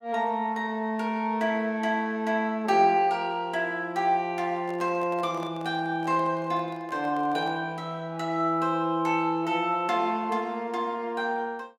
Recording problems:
microphone handling noise; from 4.5 to 7.5 s; peak -10 dB vs average level

